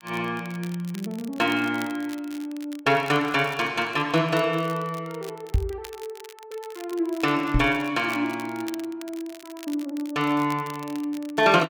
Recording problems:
crackling; vinyl, SNR 19 dB
microphone bump; at 5.5 s and at 7.5 s; peak +6 dB vs average level

